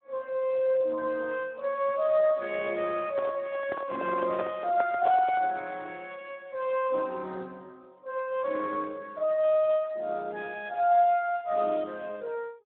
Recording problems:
telephone audio; 240 Hz to 3.7 kHz, Speex
microphone handling noise; from 3 to 5.5 s; peak -2 dB vs average level

